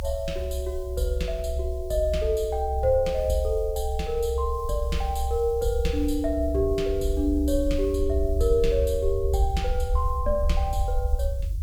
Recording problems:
background hiss; slope +6 dB per octave, SNR 27 dB
low-frequency rumble; below 68 Hz, SNR 3 dB

